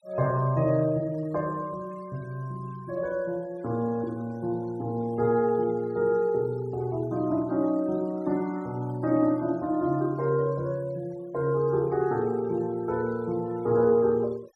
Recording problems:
noise reduction artefacts; signal-to-artefact ratio 27 dB

